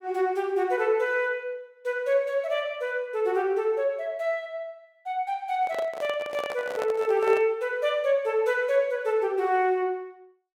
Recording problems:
microphone handling noise; from 5.5 to 7.5 s; peak -2 dB vs average level

